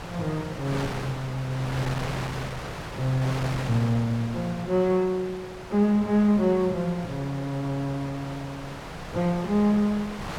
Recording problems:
wind noise; below 1.8 kHz, SNR 10 dB

